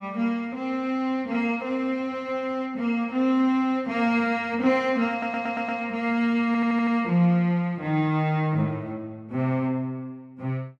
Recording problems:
stutter; at 5 s and at 6.5 s

